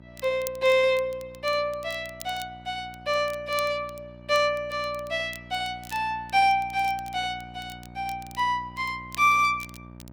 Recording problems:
hum; 60 Hz, harmonics up to 1.6 kHz, SNR 21 dB
crackling; vinyl, SNR 21 dB

